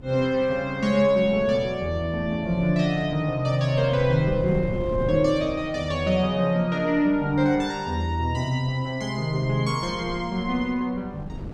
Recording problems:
wind on the microphone; below 230 Hz, SNR 15 dB

